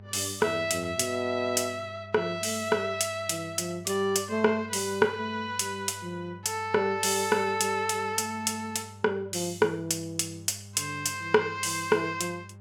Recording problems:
mains hum; 50 Hz, harmonics up to 800 Hz, SNR 19 dB

